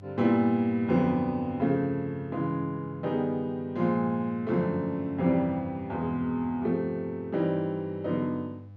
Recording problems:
electrical hum; 50 Hz, harmonics up to 500 Hz, SNR 19 dB

